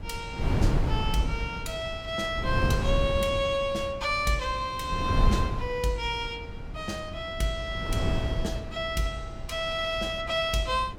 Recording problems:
wind on the microphone; below 160 Hz, SNR 3 dB

